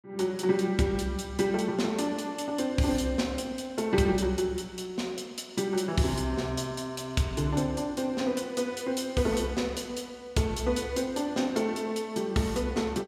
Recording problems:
none

